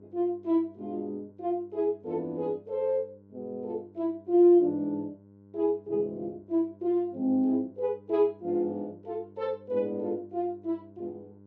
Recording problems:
hum; 50 Hz, harmonics up to 1 kHz, SNR 25 dB

